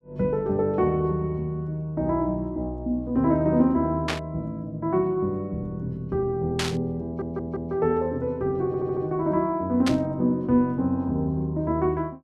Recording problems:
static burst; at 4 s, at 6.5 s and at 10 s; peak +2 dB vs average level
stutter; at 7 s and at 8.5 s

